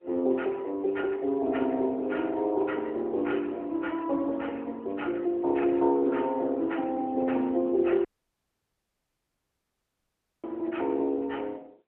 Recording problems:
phone line; 240 Hz to 3.1 kHz, AMR-NB
audio cutting out; at 8 s for 2.5 s

